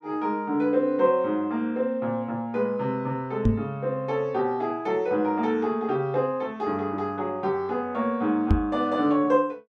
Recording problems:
microphone thump; at 3.5 s and at 8.5 s; peak +9 dB vs average level

